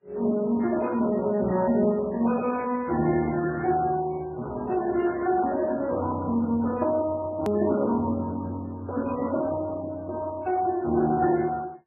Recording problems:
lossy codec; Speex, then MP3, log-spectral distance 3 dB, nothing above 13.1 kHz
edit click; at 7.5 s

